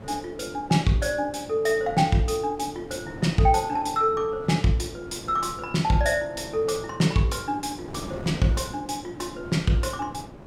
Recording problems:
wind on the microphone; below 530 Hz, SNR 16 dB

